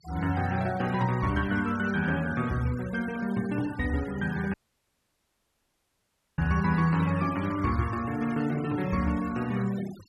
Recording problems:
denoising artefacts; signal-to-artefact ratio 17 dB
audio cutting out; at 4.5 s for 2 s

